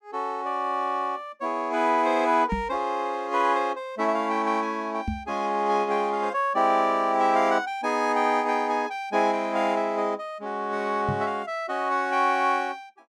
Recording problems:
microphone bump; at 2.5 s, at 5 s and at 11 s; peak 0 dB vs average level

